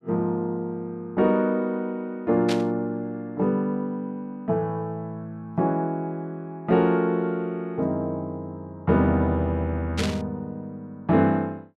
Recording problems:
burst of static; at 2.5 s and at 10 s; peak 0 dB vs average level

